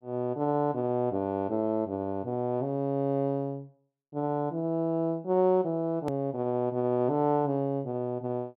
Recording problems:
edit click; at 6 s

